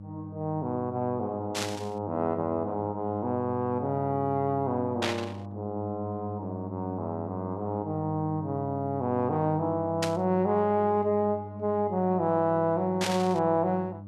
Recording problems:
hum; 50 Hz, harmonics up to 600 Hz, SNR 11 dB
static burst; 4 times, first at 1.5 s; peak +3 dB vs average level

